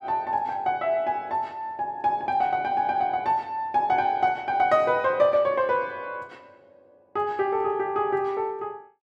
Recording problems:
none

